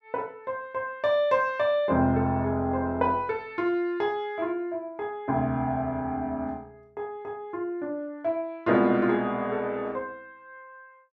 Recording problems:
none

